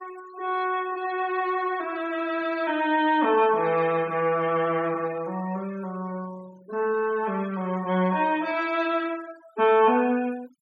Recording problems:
noise reduction artefacts; signal-to-artefact ratio 23 dB

